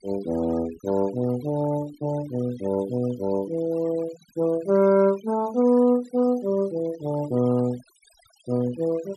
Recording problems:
noise reduction artefacts; signal-to-artefact ratio 21 dB

